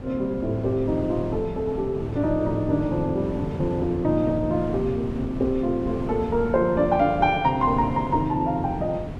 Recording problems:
wind on the microphone; below 320 Hz, SNR 10 dB

